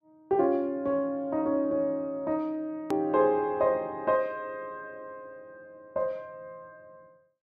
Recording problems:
click at an edit; at 3 s

